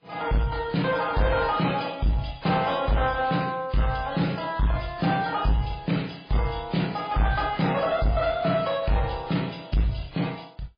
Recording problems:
lossy codec; MP3, then AAC, log-spectral distance 5 dB, nothing above 5 kHz
distorted audio; soft clipping, signal-to-distortion ratio 7 dB

